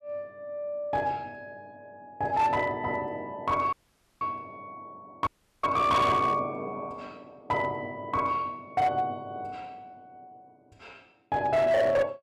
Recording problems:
distortion; hard clipping, signal-to-distortion ratio 12 dB
dropout; at 3.5 s and at 5.5 s

